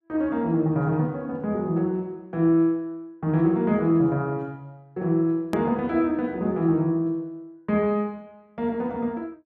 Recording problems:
edit click; at 5.5 s

